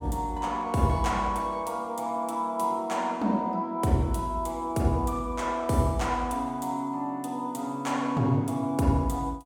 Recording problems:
none

